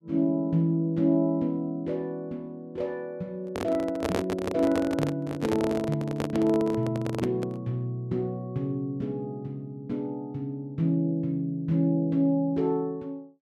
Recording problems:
handling noise; from 3.5 to 7.5 s; peak +3 dB vs average level

